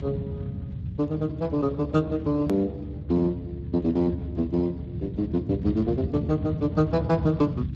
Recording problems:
lossy codec; Speex, log-spectral distance 2 dB, nothing above 14.1 kHz
low-frequency rumble; below 170 Hz, SNR 7 dB
edit click; at 2.5 s

